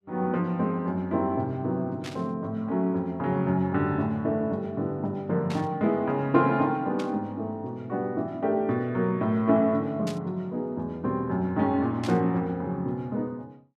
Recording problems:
static burst; 5 times, first at 2 s; peak -7 dB vs average level

